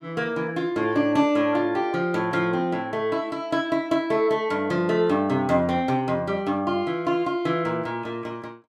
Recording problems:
none

